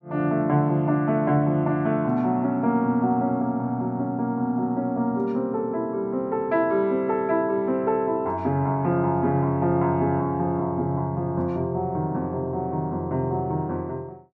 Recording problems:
none

